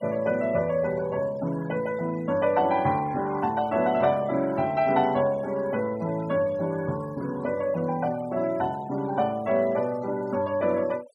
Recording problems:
denoising artefacts; signal-to-artefact ratio 22 dB

